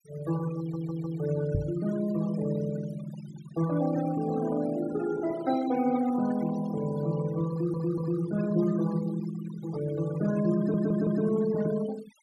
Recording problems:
denoising artefacts; signal-to-artefact ratio 15 dB
stutter; at 0.5 s, at 7.5 s and at 11 s
knock on the microphone; at 1.5 s; peak +4 dB vs average level

